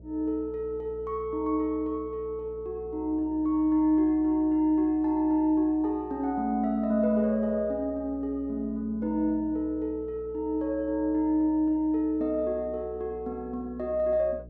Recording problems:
electrical hum; 60 Hz, harmonics up to 660 Hz, SNR 20 dB

